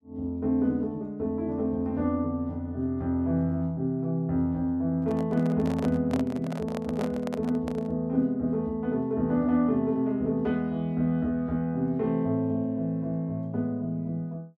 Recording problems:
microphone handling noise; from 5 to 8 s; peak -3 dB vs average level

